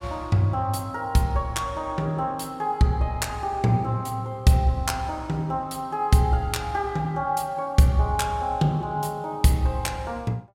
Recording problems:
none

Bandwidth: 16 kHz